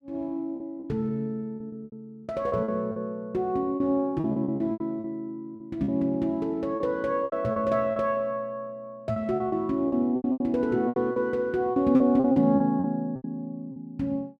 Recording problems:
lost packets; 13% of the sound replaced, filled with repeated pitch periods

